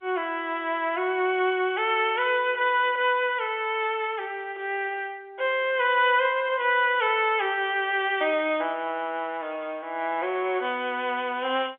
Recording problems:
phone line; 320 Hz to 3.4 kHz, G.711

